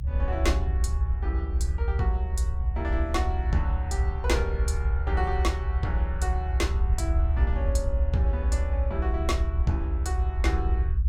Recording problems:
rumble; below 72 Hz, strongest tone 56 Hz, SNR -5 dB

